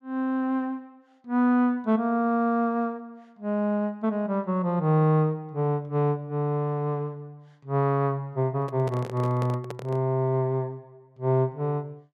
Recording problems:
microphone handling noise; from 8.5 to 10 s; peak -6 dB vs average level

